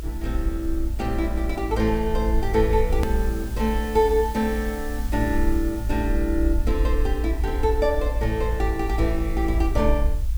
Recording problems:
hiss; slope 0 dB per octave, SNR 19 dB
rumble; below 56 Hz, SNR 2 dB
click at an edit; at 3 s

